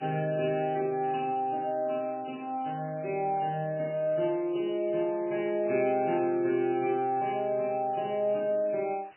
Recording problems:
codec artefacts; MP3, log-spectral distance 9 dB, nothing above 2.7 kHz
background hiss; SNR 28 dB

